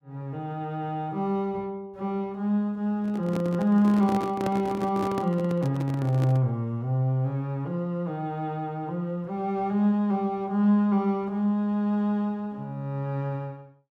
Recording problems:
handling noise; from 3 to 6.5 s; peak -2 dB vs average level

